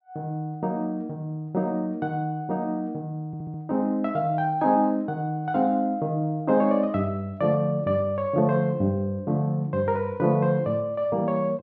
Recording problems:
stutter; at 3.5 s

